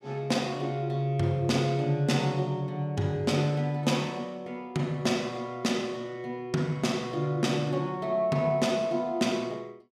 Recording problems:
none

